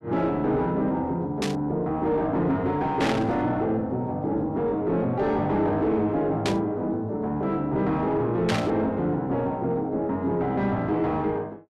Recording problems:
distorted audio; soft clipping, signal-to-distortion ratio 10 dB
burst of static; 4 times, first at 1.5 s; peak +1 dB vs average level

